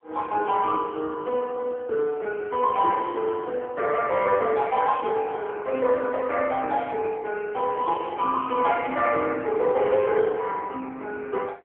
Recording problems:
telephone audio; 280 Hz to 3.4 kHz, AMR-NB

